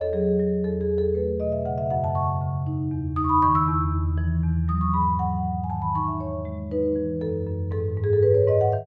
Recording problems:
none

